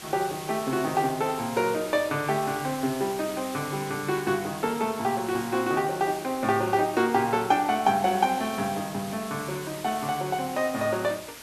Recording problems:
hiss; slope -1 dB per octave, SNR 13 dB

